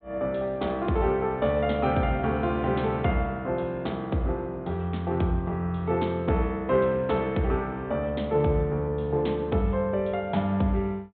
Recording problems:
low-pass filter; nothing above 4 kHz

